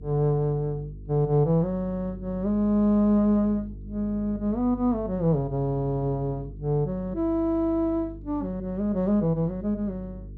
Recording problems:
hum; 50 Hz, harmonics up to 450 Hz, SNR 16 dB

